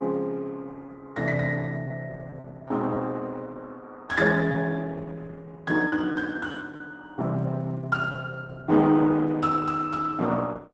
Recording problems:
lossy codec; Opus, log-spectral distance 3 dB
packet loss; 3% of the sound replaced, filled with repeated pitch periods

